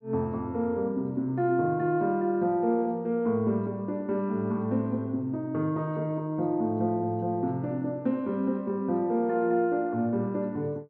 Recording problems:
none

